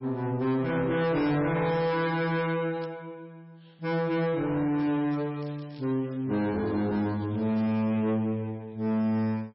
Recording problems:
codec artefacts; MP3, log-spectral distance 2 dB, nothing above 4.9 kHz
distorted audio; soft clipping, signal-to-distortion ratio 10 dB
crackle; at 2.5 s and from 5 to 7.5 s; loose cable, SNR 27 dB

